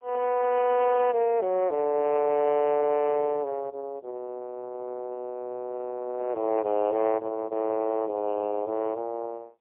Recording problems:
telephone audio; 320 Hz to 3.1 kHz, AMR-NB, then MP3

